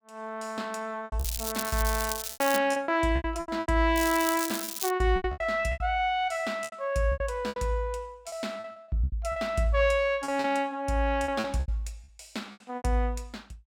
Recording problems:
packet loss; 13% of the sound replaced, filled with repeated pitch periods
crackle; from 1 to 2.5 s and at 4 s; loose cable, SNR 5 dB

